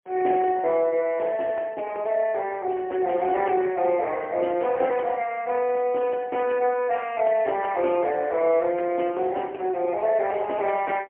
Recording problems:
telephone audio; 260 Hz to 3.9 kHz, AMR-NB, then MP3

